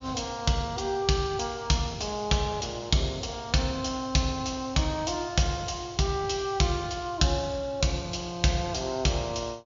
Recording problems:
treble missing; nothing above 7.2 kHz

